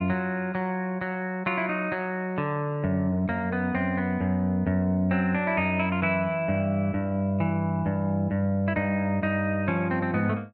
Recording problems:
none

